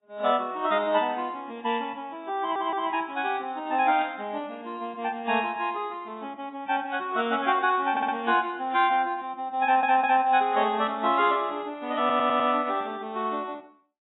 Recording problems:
lossy codec; AAC, log-spectral distance 3 dB, nothing above 3.8 kHz
audio stuttering; 4 times, first at 2.5 s
burst of static; at 4 s, at 7 s and at 11 s; peak -12 dB vs average level

